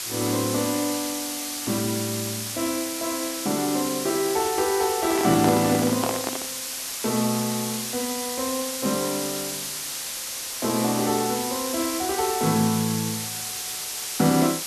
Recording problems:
hiss; slope +2 dB per octave, SNR 3 dB
microphone handling noise; from 5 to 6.5 s; peak +2 dB vs average level

